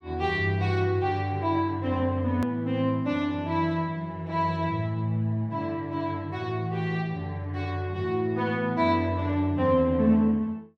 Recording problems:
click at an edit; at 2.5 s

